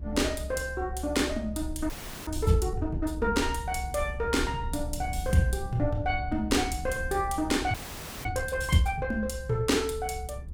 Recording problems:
low-frequency rumble; below 76 Hz, SNR 8 dB
audio freezing; at 2 s and at 7.5 s for 0.5 s

